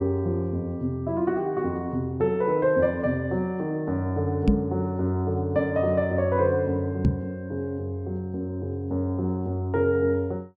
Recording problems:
microphone bump; at 4.5 s and at 7 s; peak +8 dB vs average level

